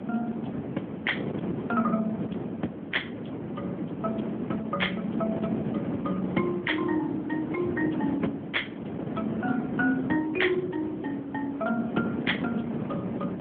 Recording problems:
telephone audio; 190 Hz to 3.4 kHz, AMR-NB
wind noise; below 420 Hz, SNR 3 dB

